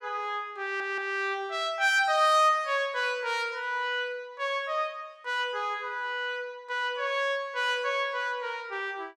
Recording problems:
stutter; at 0.5 s

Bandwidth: 17 kHz